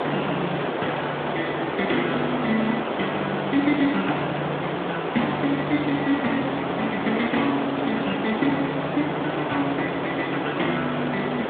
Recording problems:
phone line; 240 Hz to 3.6 kHz, Speex
background hiss; SNR 1 dB

